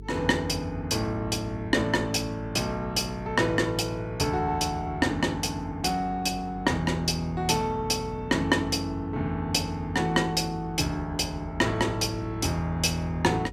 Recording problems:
electrical hum; 50 Hz, harmonics up to 450 Hz, SNR 17 dB

